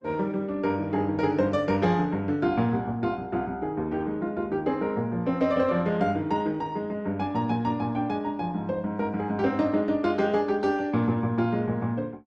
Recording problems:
lossy codec; Opus, log-spectral distance 2 dB

